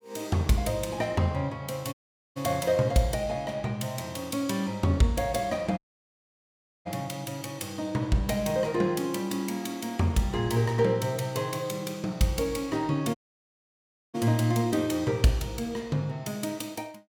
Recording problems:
dropout; at 2 s, at 6 s for 1 s and at 13 s for 1 s

